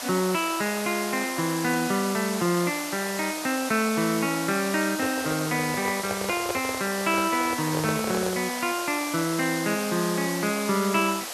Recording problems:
hiss; SNR 6 dB
microphone handling noise; from 5 to 8.5 s; peak 0 dB vs average level

